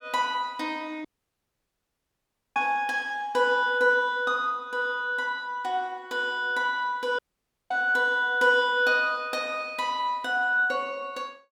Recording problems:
audio cutting out; at 1 s for 1.5 s and at 7 s for 0.5 s

